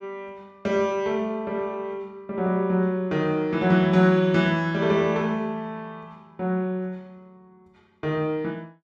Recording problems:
none

